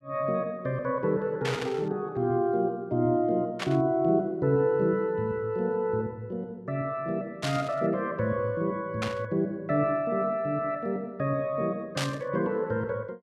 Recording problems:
burst of static; 5 times, first at 1.5 s; peak +1 dB vs average level

